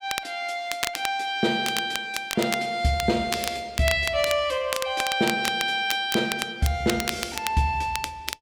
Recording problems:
crackle; vinyl, SNR 7 dB

